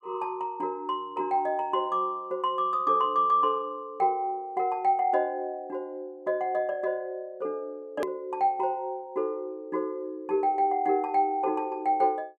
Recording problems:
click at an edit; at 8 s

